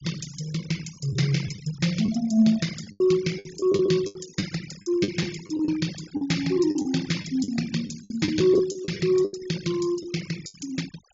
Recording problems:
low-pass filter; nothing above 7.4 kHz
denoising artefacts; signal-to-artefact ratio 15 dB
packet loss; 11% of the sound replaced, filled with the last packet

